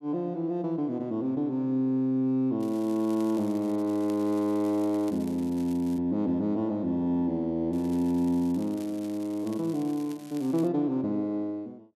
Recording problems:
crackling; from 2.5 to 6 s and from 7.5 to 11 s; loose cable, SNR 24 dB

